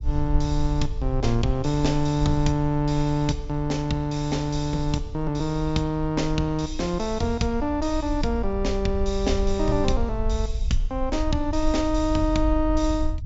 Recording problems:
treble cut off; nothing above 8 kHz
rumble; below 56 Hz, SNR 6 dB

